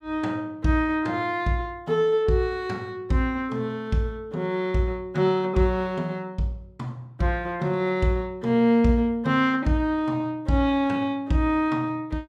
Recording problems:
none

